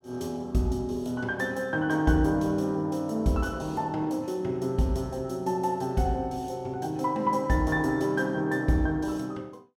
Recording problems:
none

